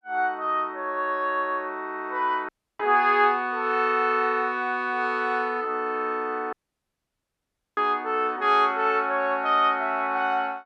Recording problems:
dropout; at 2.5 s and at 6.5 s for 1 s

